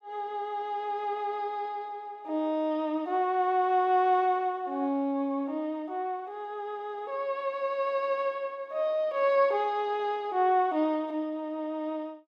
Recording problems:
none

